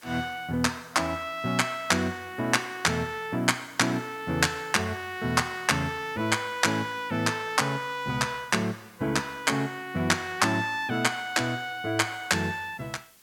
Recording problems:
hiss; slope 0 dB per octave, SNR 27 dB

